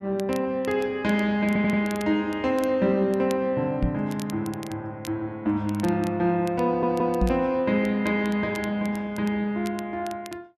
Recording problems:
crackle; vinyl, SNR 22 dB
stutter; at 1.5 s and at 6.5 s
microphone bump; at 4 s and at 7 s; peak +5 dB vs average level

